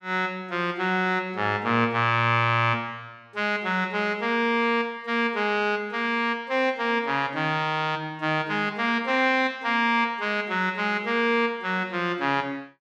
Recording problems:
none

